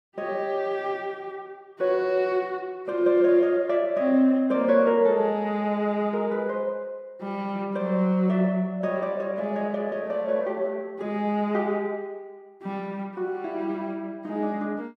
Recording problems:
none

